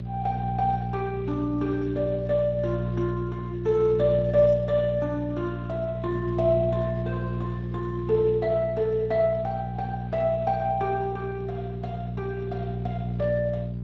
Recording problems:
codec artefacts; Speex, log-spectral distance 2 dB
hum; 60 Hz, harmonics up to 420 Hz, SNR 5 dB

